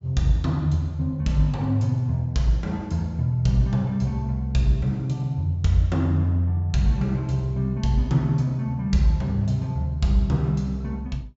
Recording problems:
treble missing; nothing above 8 kHz

